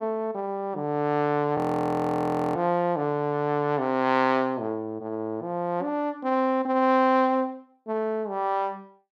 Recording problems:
frozen audio; at 1.5 s for 1 s

